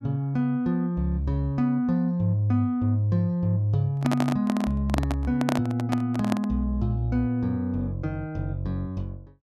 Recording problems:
microphone handling noise; from 4 to 6.5 s; peak +4 dB vs average level

